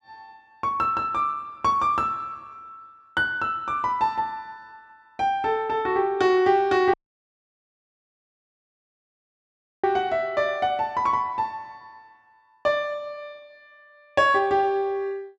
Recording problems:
dropout; at 7 s for 3 s

